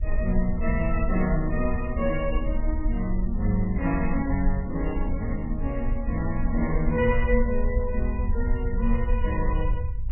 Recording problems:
codec artefacts; MP3, then MP3, log-spectral distance 2 dB, nothing above 2.4 kHz
rumble; below 60 Hz, SNR 2 dB

